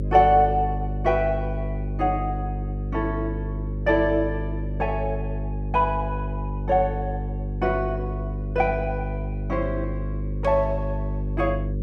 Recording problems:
hum; 50 Hz, harmonics up to 550 Hz, SNR 4 dB

